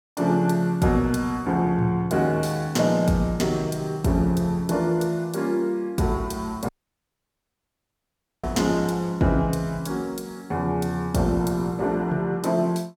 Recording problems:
audio cutting out; at 6.5 s for 1.5 s

